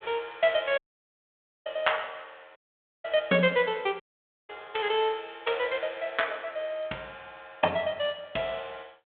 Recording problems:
telephone audio; 240 Hz to 3.4 kHz, G.726
dropout; at 1 s for 1 s, at 2.5 s and at 4 s

